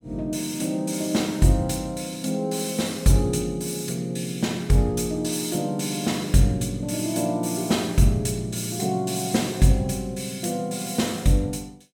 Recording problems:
none

